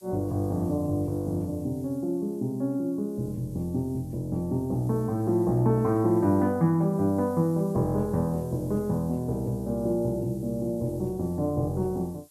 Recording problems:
background hiss; SNR 27 dB

